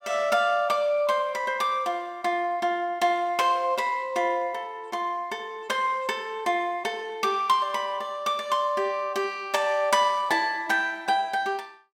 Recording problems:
none

